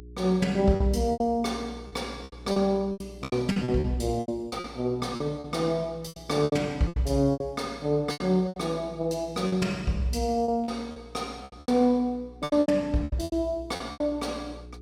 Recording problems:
electrical hum; 60 Hz, harmonics up to 420 Hz, SNR 20 dB
packet loss; 14% of the sound replaced, filled with repeated pitch periods

